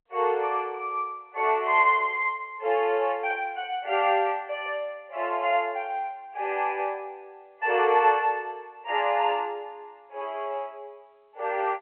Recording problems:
telephone audio; 340 Hz to 3.1 kHz, G.711

